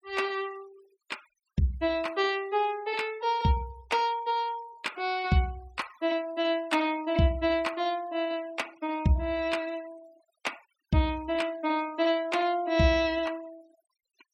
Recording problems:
noise reduction artefacts; signal-to-artefact ratio 23 dB

